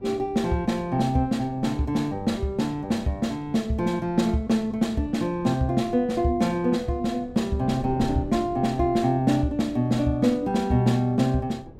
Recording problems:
wind on the microphone; below 290 Hz, SNR 19 dB

